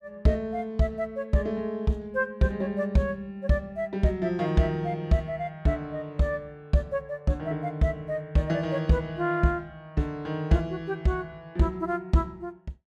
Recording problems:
none

